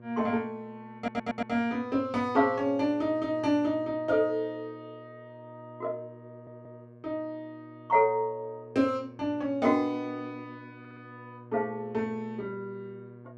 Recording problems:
hum; 60 Hz, harmonics up to 1.2 kHz, SNR 20 dB
stutter; at 1 s, at 6.5 s and at 11 s

